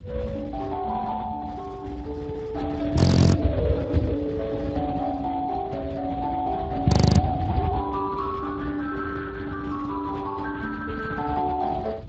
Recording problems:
codec artefacts; Speex, then Speex, log-spectral distance 3 dB
low-frequency rumble; below 220 Hz, SNR 0 dB
frozen audio; at 3 s and at 7 s

